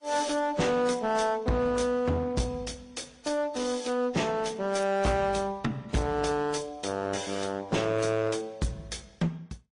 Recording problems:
lossy codec; MP3, then AAC, log-spectral distance 3 dB, nothing above 9.8 kHz
distorted audio; hard clipping, uneven, signal-to-distortion ratio 6 dB

